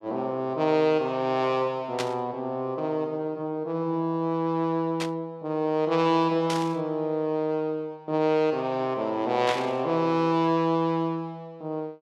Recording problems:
burst of static; 4 times, first at 2 s; peak -1 dB vs average level

